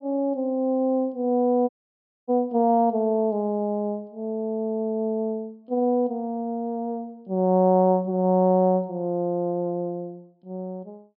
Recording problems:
treble cut off; nothing above 5.2 kHz
audio cutting out; at 1.5 s for 0.5 s

